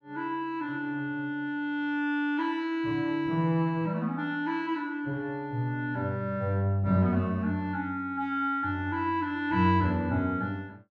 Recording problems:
none

